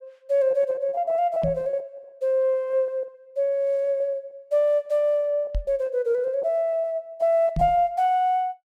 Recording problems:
lost packets; 11% of the sound replaced, filled with repeated pitch periods
knock on the microphone; at 1.5 s, at 5.5 s and at 7.5 s; peak 0 dB vs average level

